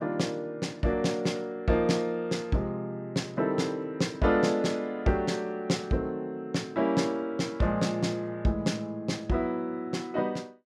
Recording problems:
none

